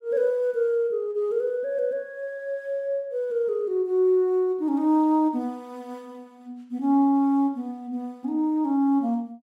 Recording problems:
none

